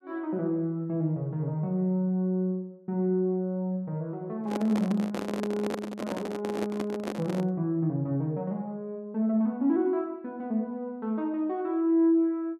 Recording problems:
microphone handling noise; from 4.5 to 7.5 s; peak -1 dB vs average level

